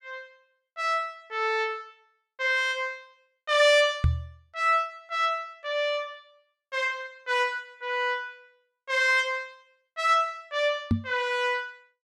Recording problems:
knock on the microphone; at 4 s and at 11 s; peak +6 dB vs average level

